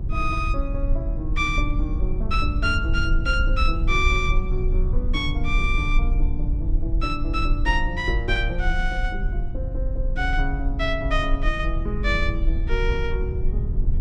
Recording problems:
electrical hum; 60 Hz, harmonics up to 600 Hz, SNR 16 dB
rumble; below 54 Hz, strongest tone 30 Hz, SNR 0 dB

